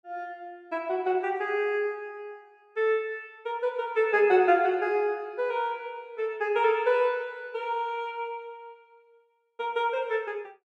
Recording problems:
none

